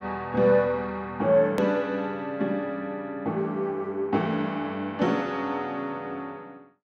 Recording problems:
edit click; at 1.5 s

